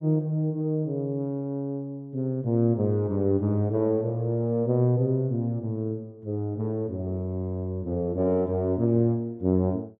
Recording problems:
none

